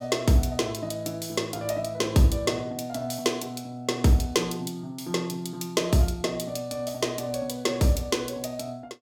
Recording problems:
none

